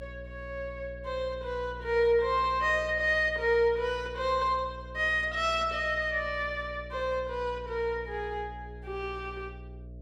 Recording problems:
hum; 60 Hz, harmonics up to 660 Hz, SNR 16 dB

